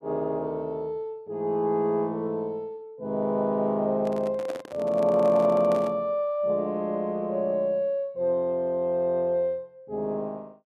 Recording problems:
microphone handling noise; from 4 to 6 s; peak -6 dB vs average level

